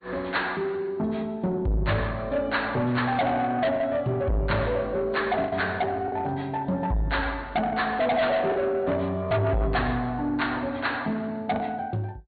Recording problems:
low-pass filter; nothing above 4.4 kHz
lossy compression; MP3, log-spectral distance 2 dB
distortion; soft clipping, signal-to-distortion ratio 6 dB
packet loss; 2% of the sound replaced, filled with the last packet

